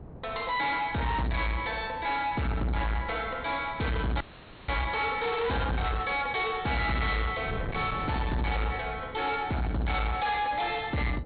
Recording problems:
treble cut off; nothing above 4.3 kHz
distorted audio; soft clipping, signal-to-distortion ratio 8 dB
wind on the microphone; below 490 Hz, SNR 14 dB
audio freezing; at 4 s

